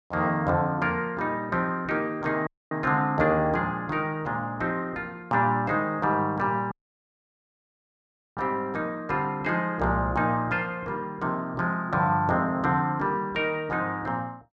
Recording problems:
dropout; at 2.5 s and at 6.5 s for 1.5 s

